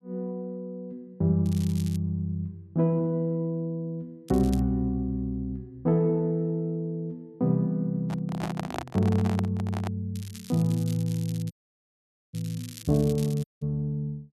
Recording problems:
crackling; at 1.5 s, at 4.5 s and from 10 to 14 s; loose cable, SNR 18 dB
microphone handling noise; from 8 to 10 s; peak -1 dB vs average level
dropout; at 12 s for 1 s and at 13 s

